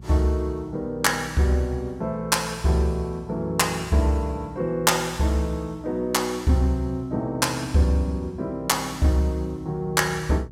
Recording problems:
mains hum; 60 Hz, harmonics up to 420 Hz, SNR 19 dB

